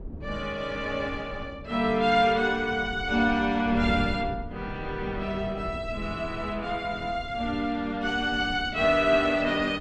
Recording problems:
wind on the microphone; below 210 Hz, SNR 14 dB

